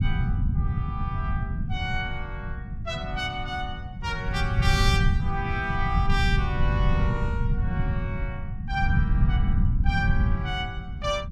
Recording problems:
low-frequency rumble; below 130 Hz, SNR -4 dB

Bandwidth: 16.5 kHz